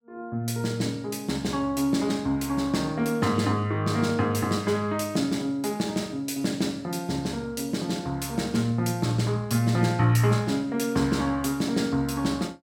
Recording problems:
none

